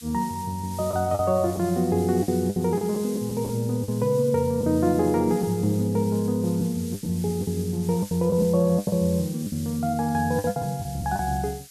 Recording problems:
background hiss; SNR 17 dB
packet loss; 8% of the sound replaced, filled with the last packet

